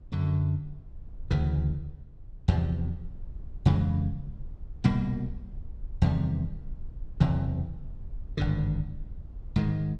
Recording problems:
rumble; below 60 Hz, SNR 16 dB

